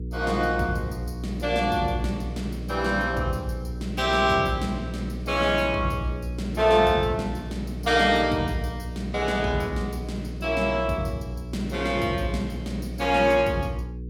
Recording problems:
hum; 60 Hz, harmonics up to 480 Hz, SNR 9 dB

